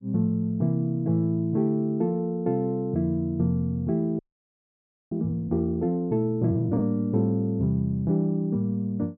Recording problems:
audio freezing; at 4 s for 1 s

